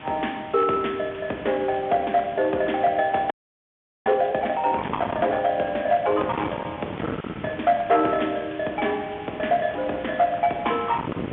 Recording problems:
telephone audio; 240 Hz to 3.4 kHz, G.711
distortion; hard clipping, signal-to-distortion ratio 7 dB
background hiss; SNR 18 dB
wind noise; below 970 Hz, SNR 13 dB
frozen audio; at 3.5 s for 1 s

